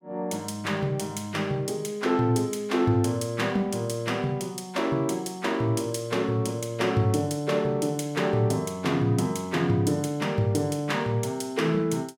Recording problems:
none

